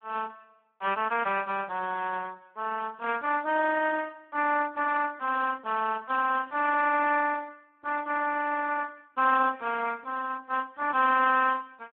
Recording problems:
phone line; 220 Hz to 2.6 kHz, Speex
burst of static; 4 times, first at 5 s; peak -22 dB vs average level

